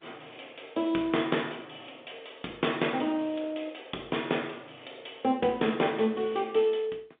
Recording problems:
phone line; 240 Hz to 3.7 kHz, G.711

